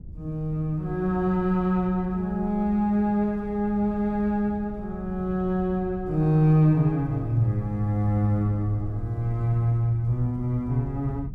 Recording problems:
wind noise; below 110 Hz, SNR 16 dB

